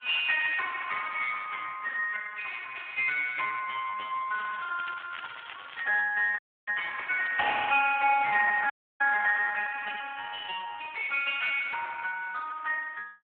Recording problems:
telephone audio; 240 Hz to 2.1 kHz, Speex
crackle; from 4.5 to 6 s; loose cable, SNR 17 dB
dropout; at 6.5 s and at 8.5 s

